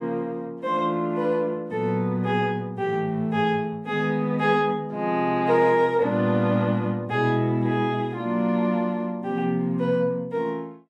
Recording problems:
none

